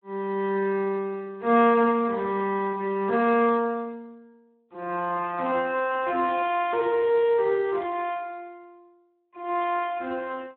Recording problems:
phone line; 220 Hz to 3.5 kHz, Speex

